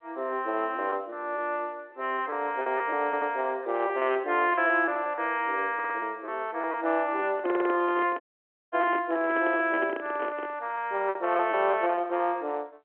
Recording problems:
phone line; 280 Hz to 3.3 kHz, G.711
packet loss; 9% of the sound replaced, filled with repeated pitch periods
stutter; at 3 s, at 5.5 s and at 7.5 s
microphone handling noise; from 7.5 to 11 s; peak -2 dB vs average level
audio cutting out; at 8 s for 0.5 s

